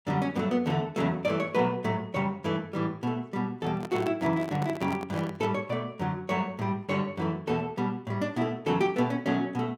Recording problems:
handling noise; from 3.5 to 5.5 s; peak -4 dB vs average level

